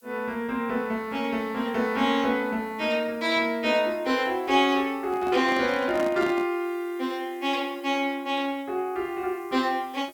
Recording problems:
background hiss; slope +5 dB per octave, SNR 29 dB
microphone handling noise; from 5 to 6.5 s; peak -4 dB vs average level

